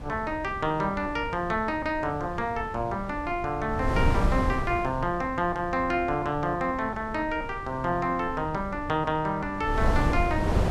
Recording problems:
wind on the microphone; below 220 Hz, SNR 6 dB

